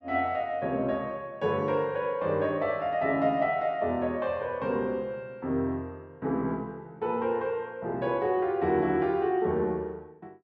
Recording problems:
none

